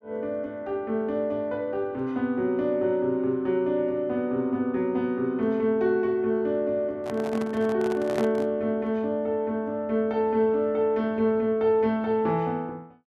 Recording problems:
microphone handling noise; from 7 to 8.5 s; peak -3 dB vs average level

